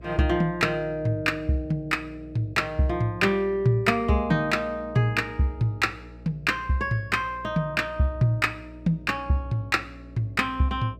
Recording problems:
electrical hum; 60 Hz, harmonics up to 660 Hz, SNR 20 dB

